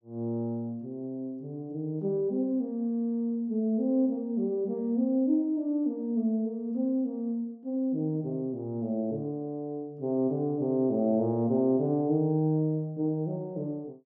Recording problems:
none

